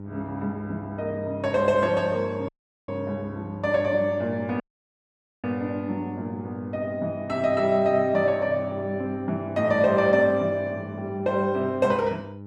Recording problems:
mains hum; 50 Hz, harmonics up to 1 kHz, SNR 12 dB
audio cutting out; at 2.5 s and at 4.5 s for 1 s

